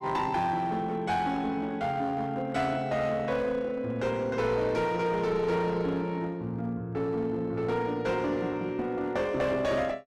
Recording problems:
distortion; hard clipping, uneven, signal-to-distortion ratio 11 dB

